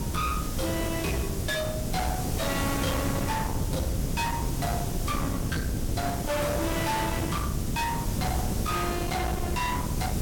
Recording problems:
distortion; hard clipping, signal-to-distortion ratio 6 dB
hiss; SNR 6 dB
wind on the microphone; below 350 Hz, SNR 2 dB

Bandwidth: 17 kHz